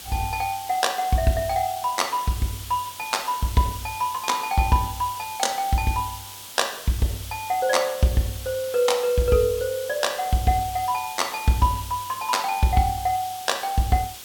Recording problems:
hiss; SNR 12 dB

